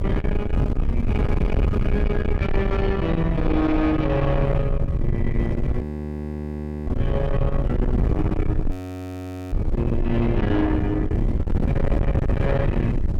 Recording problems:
distortion; soft clipping, signal-to-distortion ratio 8 dB
low-frequency rumble; below 92 Hz, strongest tone 22 Hz, SNR 3 dB
wind noise; below 180 Hz, SNR 1 dB
audio freezing; at 6 s for 1 s and at 8.5 s for 1 s

